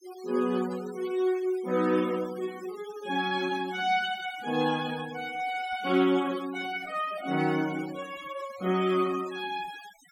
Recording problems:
noise reduction artefacts; signal-to-artefact ratio 18 dB

